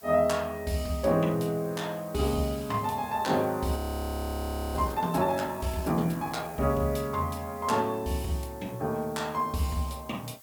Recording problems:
hiss; SNR 19 dB
audio freezing; at 4 s for 1 s

